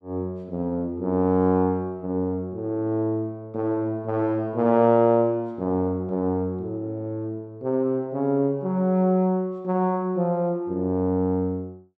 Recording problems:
none

